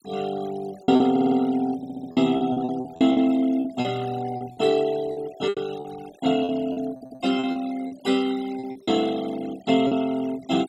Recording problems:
denoising artefacts; signal-to-artefact ratio 19 dB
lost packets; 11% of the sound replaced, filled with repeated pitch periods
audio stuttering; at 1 s, at 2 s and at 7 s

